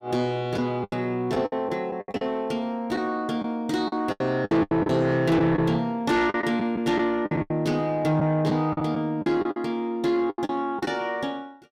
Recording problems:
distorted audio; soft clipping, signal-to-distortion ratio 12 dB
packet loss; 11% of the sound replaced, filled with the last packet

